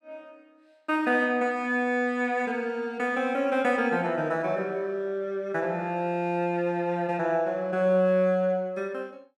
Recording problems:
none

